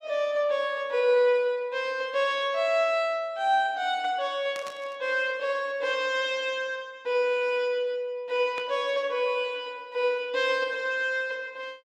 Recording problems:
burst of static; at 4.5 s and at 8.5 s; peak -10 dB vs average level

